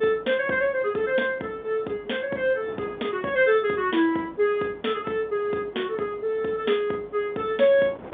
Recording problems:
phone line; 260 Hz to 3.6 kHz, G.711
wind on the microphone; below 790 Hz, SNR 21 dB

